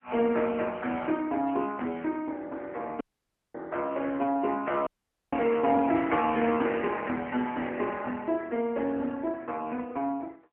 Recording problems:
telephone audio; 220 Hz to 3.2 kHz, AMR-NB
burst of static; 4 times, first at 1.5 s; peak -13 dB vs average level
dropout; at 3 s for 0.5 s and at 5 s

